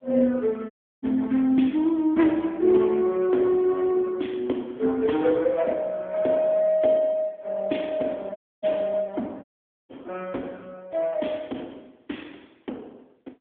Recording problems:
telephone audio; 220 Hz to 3.5 kHz, AMR-NB
dropout; at 0.5 s, at 8.5 s and at 9.5 s

